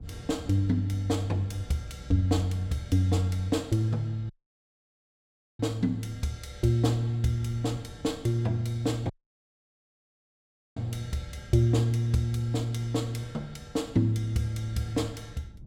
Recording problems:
wind on the microphone; below 150 Hz, SNR 18 dB
dropout; at 4.5 s for 1.5 s and at 9 s for 1.5 s

